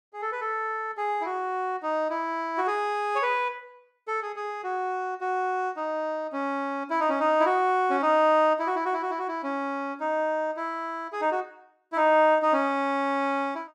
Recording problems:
none

